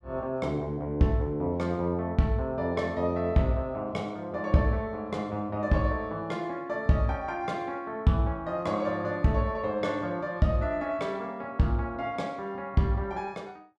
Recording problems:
none

